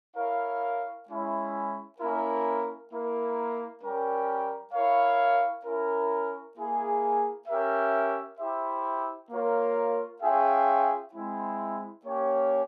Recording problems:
none

